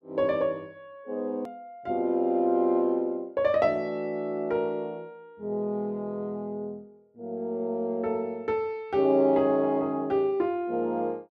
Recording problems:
hard cut with a click; at 1.5 s

